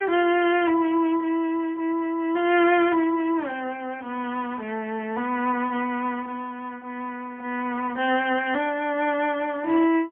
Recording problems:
phone line; 260 Hz to 3.4 kHz, AMR-NB, then MP3

